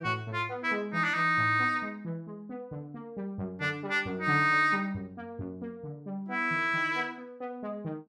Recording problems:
none

